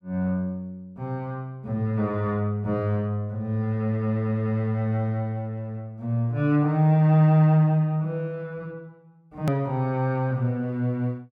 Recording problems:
click at an edit; at 9.5 s

